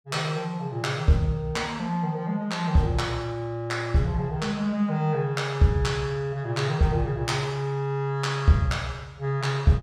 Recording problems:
none

